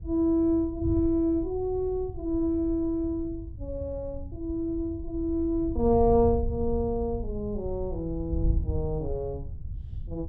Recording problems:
wind on the microphone; below 88 Hz, SNR 8 dB

